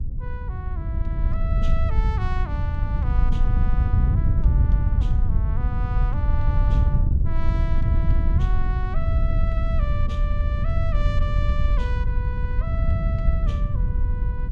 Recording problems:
wind noise; below 82 Hz, SNR -12 dB

